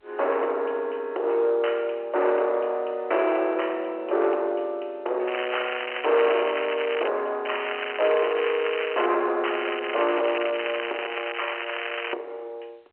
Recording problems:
phone line; 340 Hz to 3.1 kHz, G.711
distorted audio; soft clipping, signal-to-distortion ratio 9 dB
crackling; from 5.5 to 7 s, from 7.5 to 9 s and from 9.5 to 12 s; loose cable, SNR 6 dB

